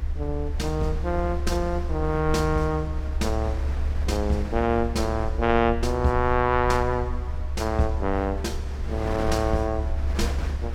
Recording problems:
low-frequency rumble; below 72 Hz, strongest tone 70 Hz, SNR 4 dB
wind on the microphone; below 1 kHz, SNR 14 dB

